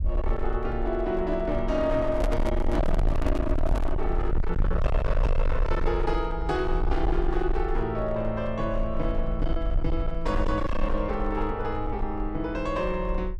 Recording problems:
distortion; hard clipping, signal-to-distortion ratio 7 dB
low-frequency rumble; below 54 Hz, SNR 2 dB
handling noise; from 2 to 4 s; peak +2 dB vs average level

